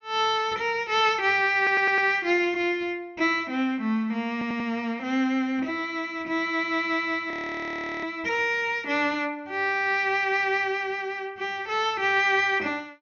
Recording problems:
low-pass filter; nothing above 6.6 kHz
stutter; at 1.5 s and at 4.5 s
audio freezing; at 7.5 s for 0.5 s

